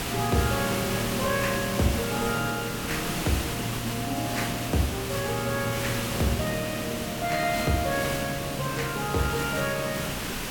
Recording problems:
hiss; slope -3 dB per octave, SNR 2 dB

